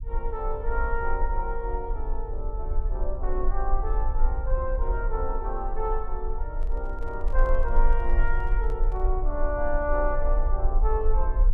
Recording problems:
low-frequency rumble; below 40 Hz, strongest tone 20 Hz, SNR -2 dB
handling noise; from 6.5 to 9 s; peak -10 dB vs average level

